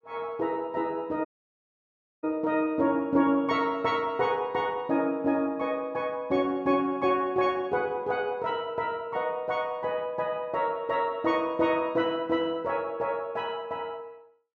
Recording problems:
audio cutting out; at 1.5 s for 1 s

